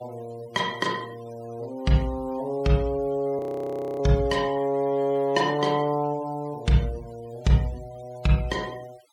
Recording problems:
noise reduction artefacts; signal-to-artefact ratio 23 dB
frozen audio; at 3.5 s for 0.5 s

